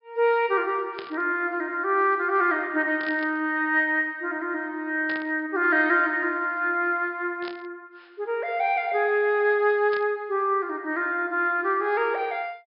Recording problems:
treble cut off; nothing above 5.5 kHz
burst of static; 5 times, first at 1 s; peak -10 dB vs average level

